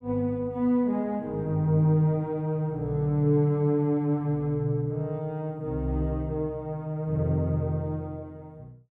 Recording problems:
none

